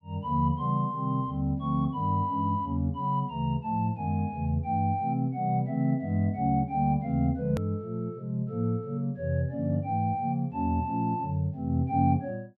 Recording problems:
click at an edit; at 7.5 s

